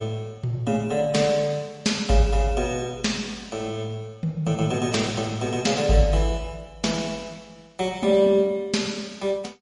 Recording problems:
codec artefacts; MP3, log-spectral distance 2 dB, nothing above 10.4 kHz

